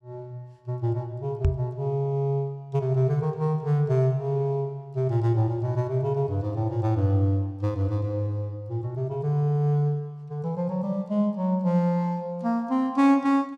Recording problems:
microphone thump; at 1.5 s; peak +6 dB vs average level

